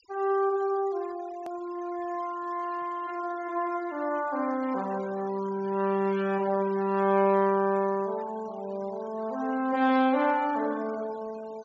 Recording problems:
low-pass filter; nothing above 8 kHz
denoising artefacts; signal-to-artefact ratio 21 dB
edit click; at 1.5 s

